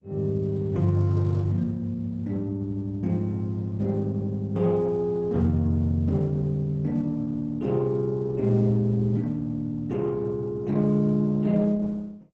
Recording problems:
lossy compression; Opus, log-spectral distance 2 dB, nothing above 7.8 kHz

